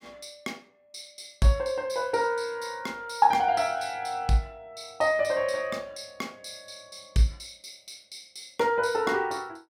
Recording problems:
none

